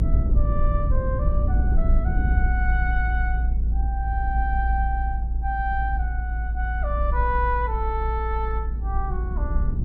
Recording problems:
low-frequency rumble; below 58 Hz, strongest tone 56 Hz, SNR -5 dB

